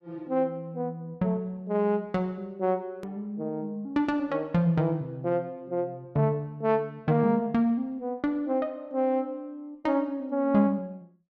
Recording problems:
edit click; at 3 s

